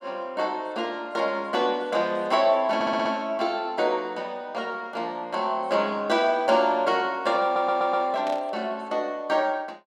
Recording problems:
stutter; at 3 s and at 7.5 s
static burst; at 8.5 s; peak -10 dB vs average level

